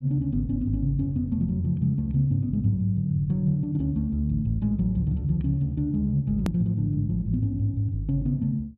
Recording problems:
hard cut with a click; at 6.5 s

